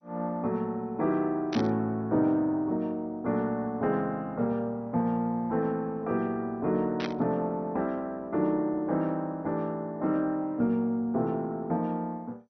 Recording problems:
lossy compression; MP2, log-spectral distance 2 dB
burst of static; at 1.5 s and at 7 s; peak -2 dB vs average level

